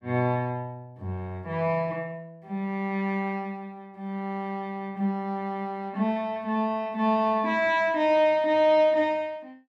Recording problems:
none

